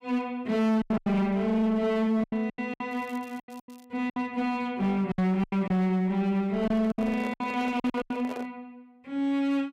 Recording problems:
distorted audio; hard clipping, uneven, signal-to-distortion ratio 9 dB
lost packets; 12% of the sound replaced, filled with silence
crackling; at 3 s; loose cable, SNR 29 dB
handling noise; from 6.5 to 8.5 s; peak -7 dB vs average level

